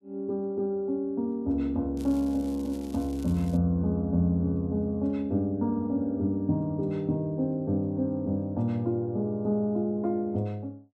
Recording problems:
crackling; from 2 to 3.5 s; loose cable, SNR 24 dB

